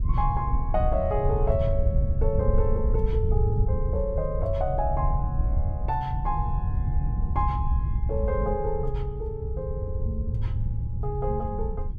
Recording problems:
wind noise; below 84 Hz, SNR -1 dB

